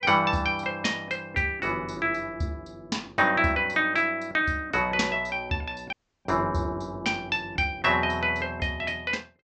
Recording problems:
treble missing; nothing above 8 kHz
audio cutting out; at 6 s

